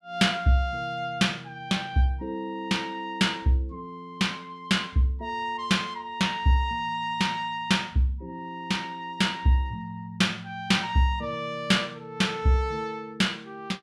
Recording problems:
none

